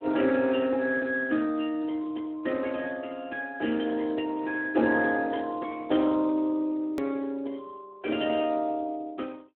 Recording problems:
telephone audio; 190 Hz to 3.3 kHz, Speex
click at an edit; at 7 s

